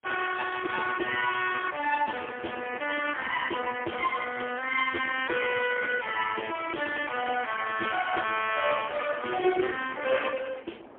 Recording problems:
phone line; 260 Hz to 3 kHz, AMR-NB, then MP3
wind on the microphone; below 1 kHz, SNR 19 dB

